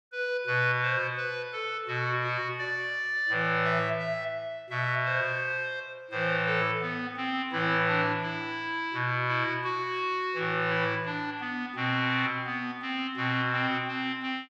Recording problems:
none

